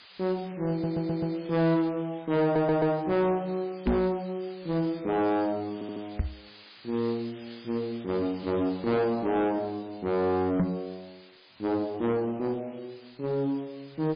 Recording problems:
lossy codec; MP3, log-spectral distance 11 dB, nothing above 10.7 kHz
distortion; soft clipping, signal-to-distortion ratio 6 dB
background hiss; SNR 21 dB
stutter; at 0.5 s, at 2.5 s and at 5.5 s
microphone bump; at 4 s, at 6 s and at 11 s; peak +7 dB vs average level

